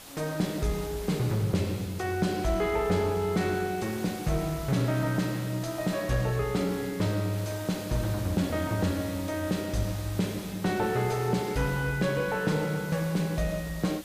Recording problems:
distortion; soft clipping, signal-to-distortion ratio 9 dB
background hiss; slope -5 dB per octave, SNR 13 dB

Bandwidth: 15 kHz